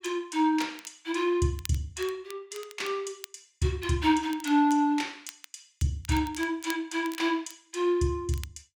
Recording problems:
crackling; vinyl, SNR 19 dB

